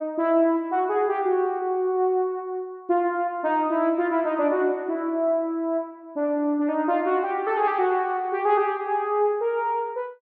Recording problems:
none

